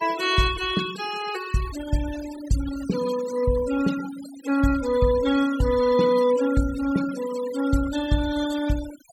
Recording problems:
denoising artefacts; signal-to-artefact ratio 13 dB

